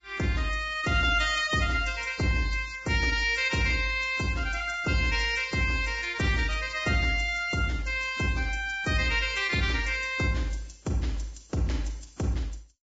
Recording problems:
lossy codec; Vorbis, log-spectral distance 4 dB, nothing above 7.6 kHz

